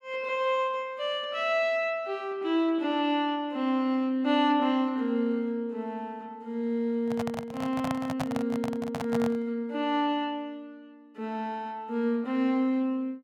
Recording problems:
microphone handling noise; from 7 to 9.5 s; peak 0 dB vs average level

